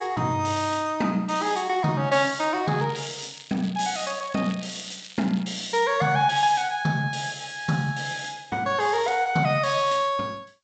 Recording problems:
lossy compression; G.722, log-spectral distance 8 dB, nothing above 7.6 kHz
crackling; from 2.5 to 5.5 s; loose cable, SNR 19 dB

